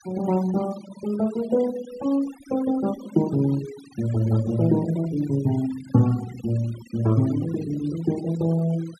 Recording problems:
denoising artefacts; signal-to-artefact ratio 18 dB

